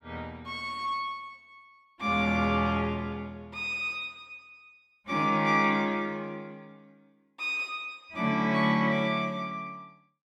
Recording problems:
none

